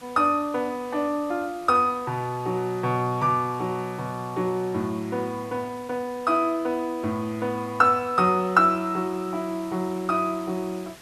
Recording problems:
background hiss; slope -2 dB per octave, SNR 22 dB

